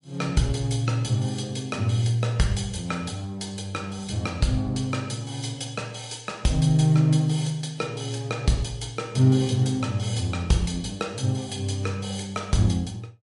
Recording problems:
lossy compression; MP3, log-spectral distance 3 dB, nothing above 10.7 kHz

